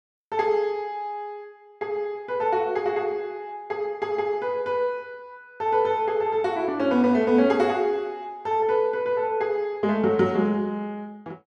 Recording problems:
none

